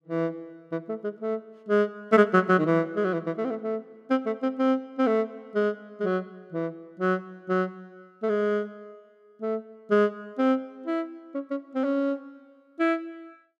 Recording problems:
none

